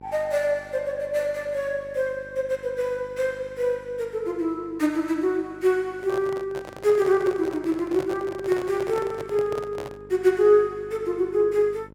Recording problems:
hum; 50 Hz, harmonics up to 1.1 kHz, SNR 24 dB
microphone handling noise; from 6 to 10 s; peak -6 dB vs average level

